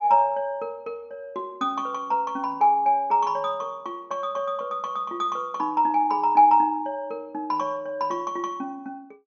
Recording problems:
treble cut off; nothing above 6.8 kHz

